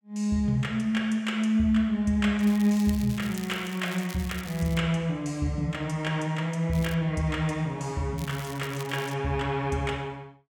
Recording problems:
crackle; from 2.5 to 5 s, at 6.5 s and at 8 s; loose cable, SNR 17 dB

